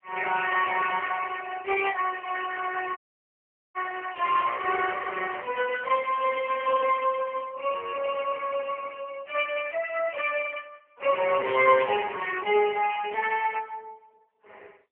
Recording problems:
phone line; 370 Hz to 2.9 kHz, AMR-NB
dropout; at 3 s for 1 s

